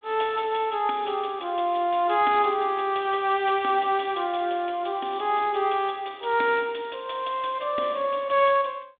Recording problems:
telephone audio; 240 Hz to 3.6 kHz, G.726

